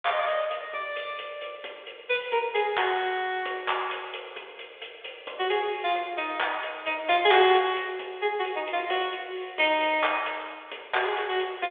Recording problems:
phone line; 320 Hz to 3.6 kHz, G.726

